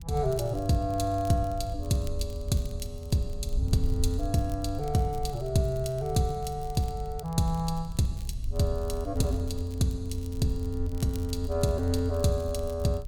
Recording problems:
wind noise; below 64 Hz, SNR 9 dB
crackle; vinyl, SNR 24 dB

